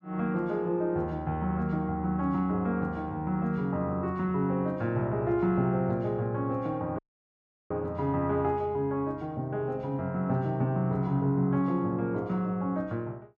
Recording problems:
dropout; at 7 s for 0.5 s

